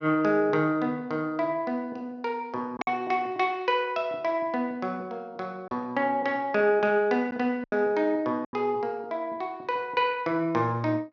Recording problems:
treble missing; nothing above 6.9 kHz
packet loss; 2% of the sound replaced, filled with silence

